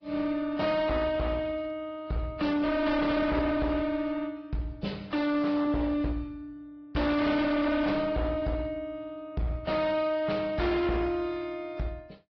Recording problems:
treble cut off; nothing above 5.2 kHz
lossy codec; AAC, then AAC, log-spectral distance 2 dB
distortion; hard clipping, uneven, signal-to-distortion ratio 6 dB

